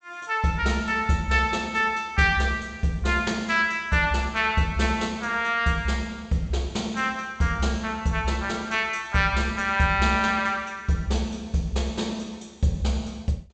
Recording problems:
treble cut off; nothing above 8 kHz

